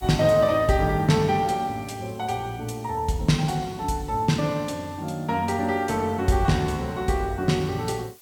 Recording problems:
hiss; slope +1 dB per octave, SNR 28 dB

